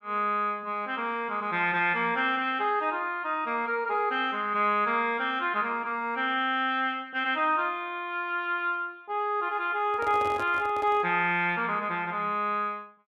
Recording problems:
handling noise; from 10 to 11 s; peak -7 dB vs average level

